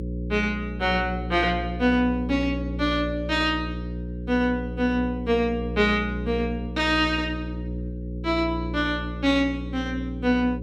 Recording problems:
hum; 60 Hz, harmonics up to 540 Hz, SNR 7 dB

